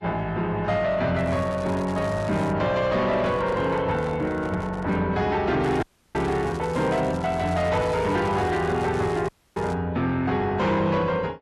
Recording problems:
lossy compression; AAC, log-spectral distance 2 dB, nothing above 13.1 kHz
distorted audio; soft clipping, signal-to-distortion ratio 12 dB
crackle; from 1 to 2.5 s and from 5.5 to 9.5 s; loose cable, SNR 21 dB
handling noise; from 3 to 5 s; peak -8 dB vs average level
dropout; at 6 s and at 9.5 s

